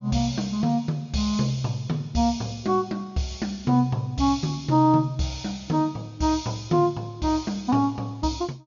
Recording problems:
treble cut off; nothing above 6.8 kHz

